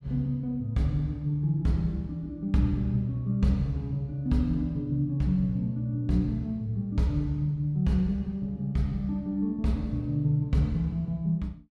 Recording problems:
none

